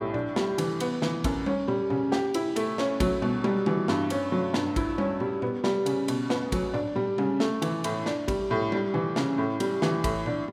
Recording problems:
none

